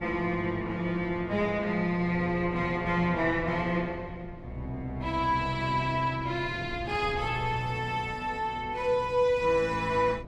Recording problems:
wind noise; below 260 Hz, SNR 16 dB

